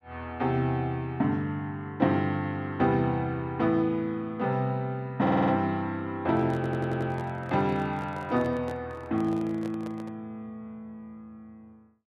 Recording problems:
stutter; at 5 s and at 6.5 s
handling noise; from 6.5 to 10 s; peak -9 dB vs average level

